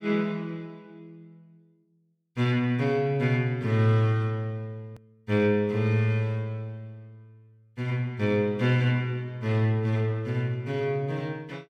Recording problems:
hard cut with a click; at 5 s

